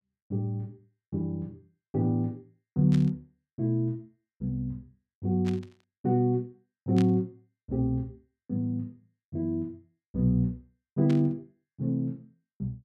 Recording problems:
burst of static; 4 times, first at 3 s; peak -8 dB vs average level

